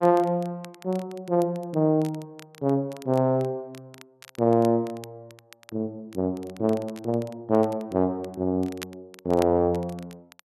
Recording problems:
crackling; vinyl, SNR 23 dB

